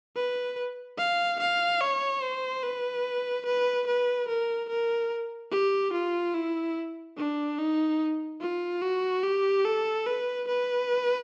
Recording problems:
none

